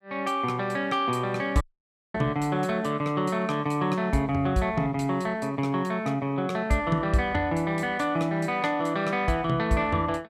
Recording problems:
audio cutting out; at 1.5 s for 0.5 s

